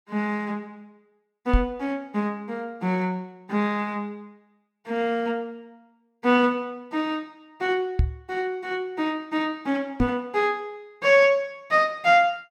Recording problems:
knock on the microphone; at 1.5 s, at 8 s and at 10 s; peak +6 dB vs average level

